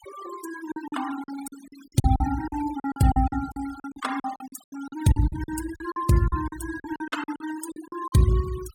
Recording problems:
noise reduction artefacts; signal-to-artefact ratio 14 dB
packet loss; 17% of the sound replaced, filled with silence

